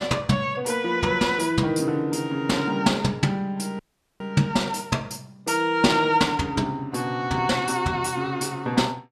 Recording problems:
dropout; at 4 s

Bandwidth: 14 kHz